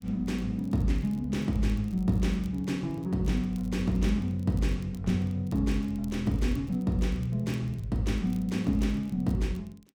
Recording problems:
crackling; vinyl, SNR 30 dB

